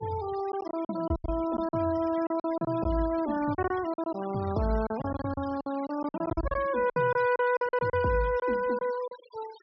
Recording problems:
treble missing; nothing above 5.5 kHz
noise reduction artefacts; signal-to-artefact ratio 17 dB
packet loss; 13% of the sound replaced, filled with silence

